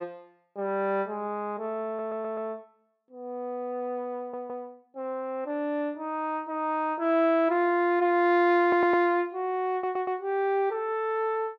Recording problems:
stutter; 4 times, first at 2 s

